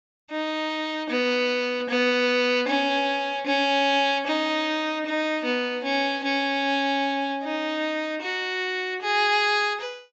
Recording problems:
low-pass filter; nothing above 8 kHz

